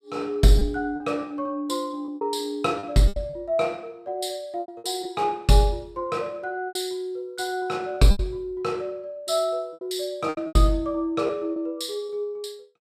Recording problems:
lost packets; 8% of the sound replaced, filled with repeated pitch periods

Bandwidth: 15 kHz